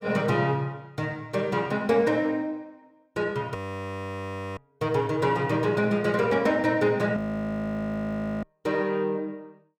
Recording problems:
audio freezing; at 3.5 s for 1 s and at 7 s for 1.5 s

